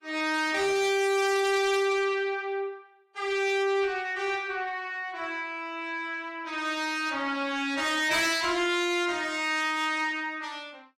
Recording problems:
lossy compression; AAC, log-spectral distance 2 dB, nothing above 17.1 kHz
distorted audio; soft clipping, signal-to-distortion ratio 11 dB

